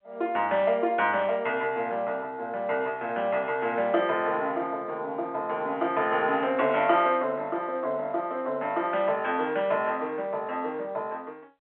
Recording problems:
telephone audio; 300 Hz to 3.4 kHz, G.711

